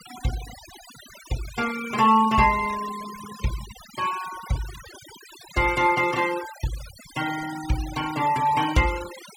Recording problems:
denoising artefacts; signal-to-artefact ratio 14 dB

